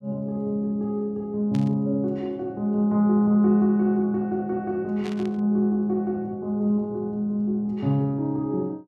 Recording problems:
burst of static; at 1.5 s and at 5 s; peak -12 dB vs average level

